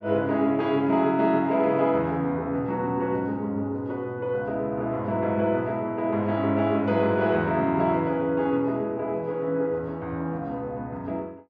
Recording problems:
none

